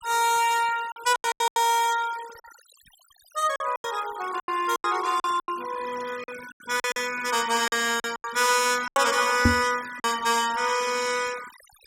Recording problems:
denoising artefacts; signal-to-artefact ratio 15 dB
lost packets; 11% of the sound replaced, filled with silence
microphone thump; at 9.5 s; peak +7 dB vs average level

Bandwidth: 16.5 kHz